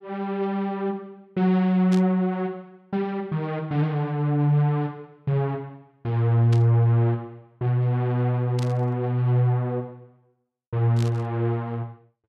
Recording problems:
burst of static; 4 times, first at 2 s; peak -9 dB vs average level

